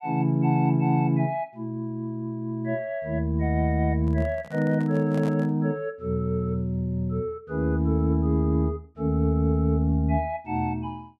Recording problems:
handling noise; from 4 to 5.5 s; peak -8 dB vs average level

